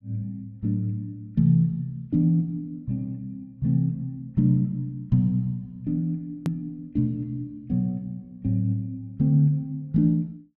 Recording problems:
edit click; at 6.5 s

